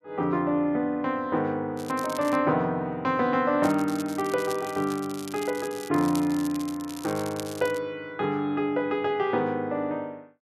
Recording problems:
crackling; at 2 s and from 3.5 to 8 s; loose cable, SNR 16 dB

